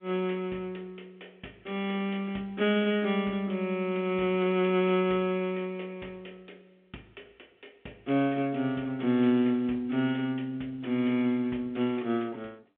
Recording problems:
phone line; 190 Hz to 3.7 kHz, G.711

